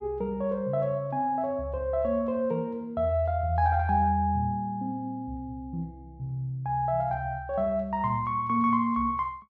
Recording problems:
none

